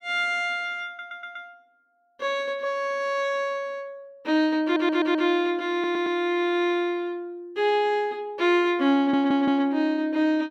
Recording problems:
audio stuttering; 4 times, first at 1 s

